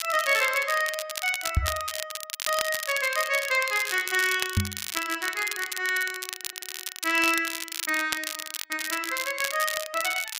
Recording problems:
crackle; vinyl, SNR 6 dB
microphone bump; at 1.5 s and at 4.5 s; peak +6 dB vs average level
audio stuttering; at 6.5 s

